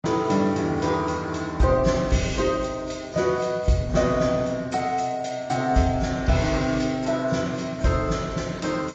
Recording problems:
lossy codec; AAC, log-spectral distance 4 dB, nothing above 7.3 kHz

